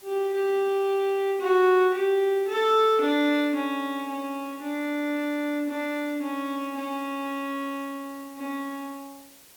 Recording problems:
hiss; slope -1 dB per octave, SNR 24 dB

